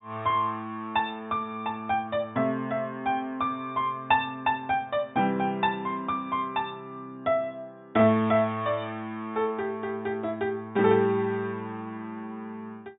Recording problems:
treble missing; nothing above 4 kHz

